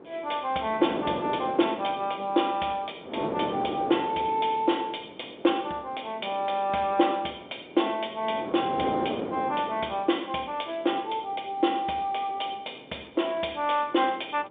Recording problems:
phone line; 220 Hz to 3.7 kHz, G.711
wind on the microphone; below 620 Hz, SNR 9 dB

